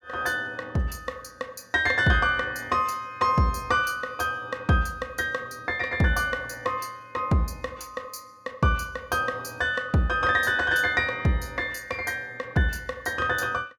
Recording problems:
none

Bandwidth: 17.5 kHz